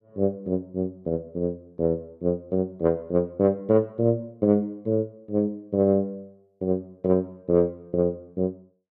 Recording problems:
none

